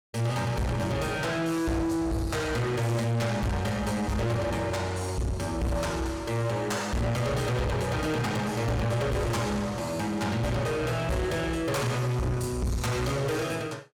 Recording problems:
distortion; soft clipping, signal-to-distortion ratio 8 dB

